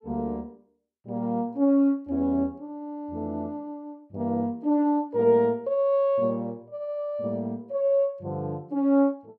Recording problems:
none

